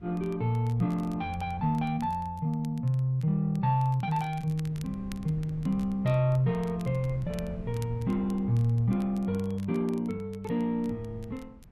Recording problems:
wind noise; below 160 Hz, SNR 18 dB
crackling; vinyl, SNR 26 dB

